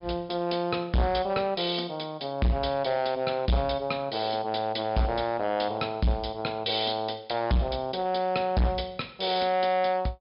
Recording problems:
treble missing; nothing above 5.5 kHz
distortion; hard clipping, uneven, signal-to-distortion ratio 7 dB

